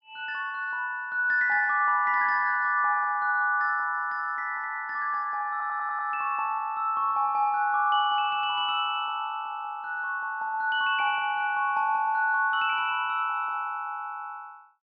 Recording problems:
treble missing; nothing above 5.5 kHz
audio stuttering; at 5.5 s

